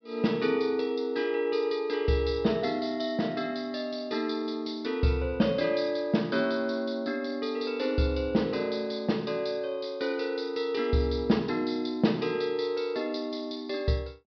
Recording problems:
treble cut off; nothing above 5.5 kHz

